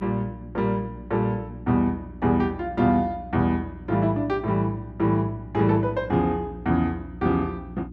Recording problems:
hum; 60 Hz, harmonics up to 360 Hz, SNR 16 dB

